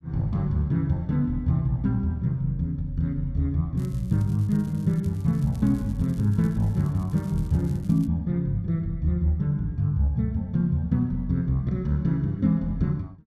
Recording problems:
crackle; from 4 to 8 s; loose cable, SNR 29 dB

